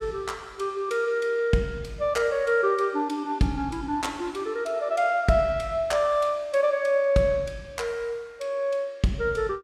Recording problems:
none

